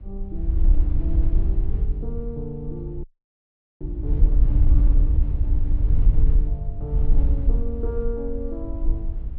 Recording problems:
treble missing; nothing above 5.3 kHz
low-frequency rumble; below 90 Hz, SNR 12 dB
wind on the microphone; below 58 Hz, SNR -11 dB
audio freezing; at 3 s for 1 s

